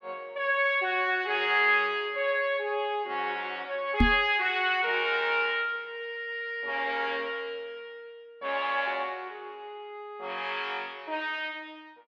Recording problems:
microphone thump; at 4 s; peak +8 dB vs average level

